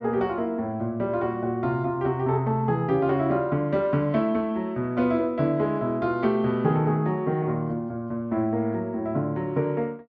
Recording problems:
none

